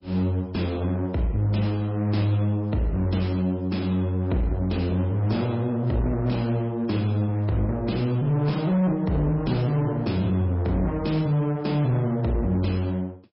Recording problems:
lossy compression; MP3, log-spectral distance 2 dB, nothing above 5.3 kHz
distorted audio; hard clipping, uneven, signal-to-distortion ratio 11 dB

